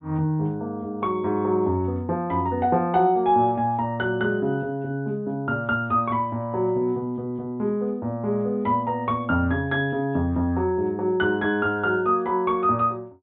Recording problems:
low-pass filter; nothing above 4 kHz

